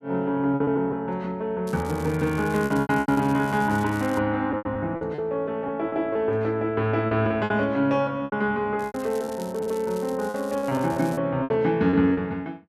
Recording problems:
packet loss; 10% of the sound replaced, filled with repeated pitch periods
crackle; from 1.5 to 4 s and from 9 to 11 s; loose cable, SNR 21 dB

